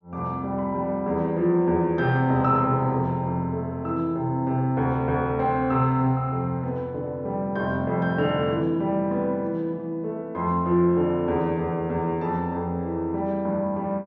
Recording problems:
treble cut off; nothing above 6.3 kHz

